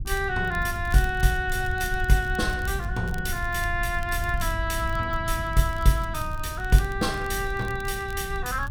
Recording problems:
rumble; below 88 Hz, SNR 8 dB
crackle; vinyl, SNR 23 dB

